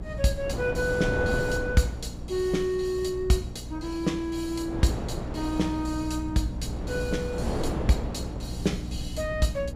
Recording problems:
electrical hum; 60 Hz, harmonics up to 300 Hz, SNR 10 dB
rumble; below 130 Hz, SNR 13 dB
wind noise; below 560 Hz, SNR 6 dB

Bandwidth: 15 kHz